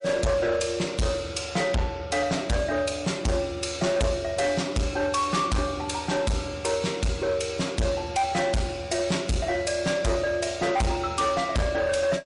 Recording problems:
lossy compression; MP3, log-spectral distance 3 dB, nothing above 10.4 kHz
distortion; hard clipping, uneven, signal-to-distortion ratio 7 dB

